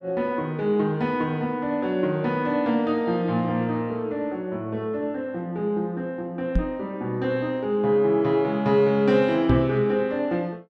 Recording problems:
microphone bump; at 6.5 s and at 9.5 s; peak +4 dB vs average level

